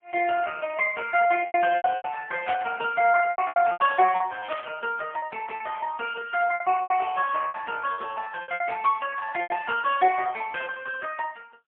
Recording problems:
phone line; 280 Hz to 3.1 kHz, AMR-NB, then MP3
lost packets; 12% of the sound replaced, filled with repeated pitch periods
static burst; at 2.5 s and at 4.5 s; peak -3 dB vs average level

